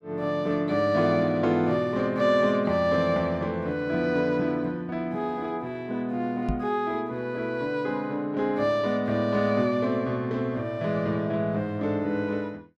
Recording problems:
microphone bump; at 6.5 s; peak 0 dB vs average level

